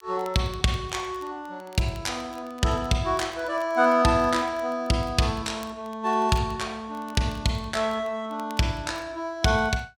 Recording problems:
crackling; vinyl, SNR 27 dB

